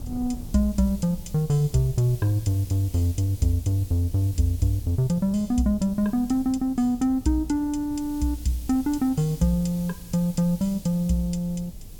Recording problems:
hiss; SNR 22 dB
wind on the microphone; below 100 Hz, SNR 19 dB

